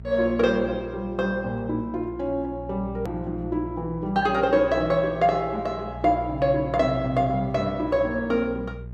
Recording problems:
mains hum; 60 Hz, harmonics up to 420 Hz, SNR 14 dB
click at an edit; at 3 s

